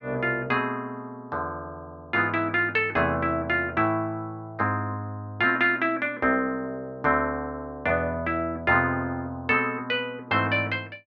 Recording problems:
none

